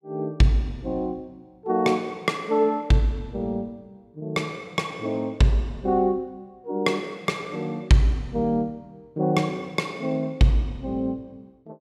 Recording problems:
none

